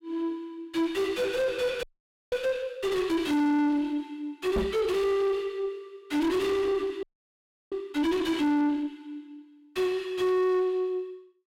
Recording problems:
distortion; soft clipping, signal-to-distortion ratio 5 dB
audio freezing; at 2 s and at 7 s for 0.5 s
knock on the microphone; at 4.5 s; peak +5 dB vs average level

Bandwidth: 16 kHz